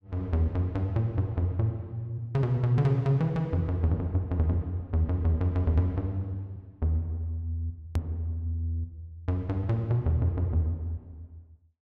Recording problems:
click at an edit; at 8 s

